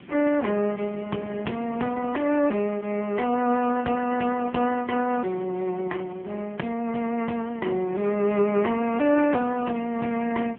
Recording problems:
telephone audio; 190 Hz to 3 kHz, AMR-NB
background hiss; SNR 29 dB
wind on the microphone; below 340 Hz, SNR 17 dB

